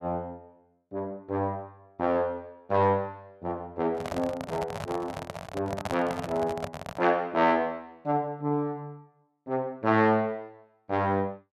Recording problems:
microphone handling noise; from 4 to 7 s; peak 0 dB vs average level

